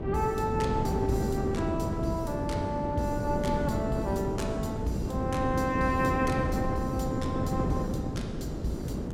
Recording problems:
wind on the microphone; below 340 Hz, SNR 0 dB

